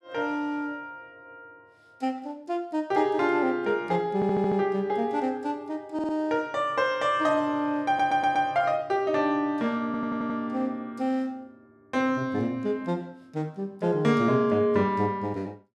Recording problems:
stutter; 4 times, first at 4 s

